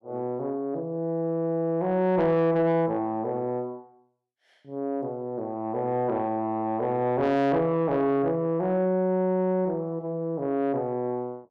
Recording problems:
distorted audio; soft clipping, signal-to-distortion ratio 12 dB

